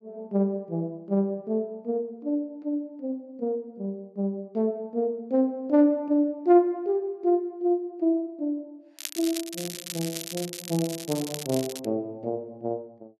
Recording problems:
crackle; from 9 to 12 s; loose cable, SNR 8 dB

